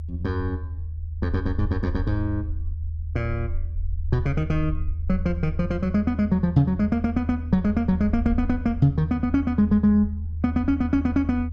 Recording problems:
rumble; below 80 Hz, strongest tone 80 Hz, SNR 7 dB

